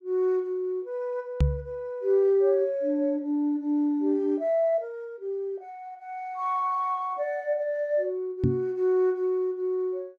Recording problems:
microphone bump; at 1.5 s and at 8.5 s; peak +7 dB vs average level

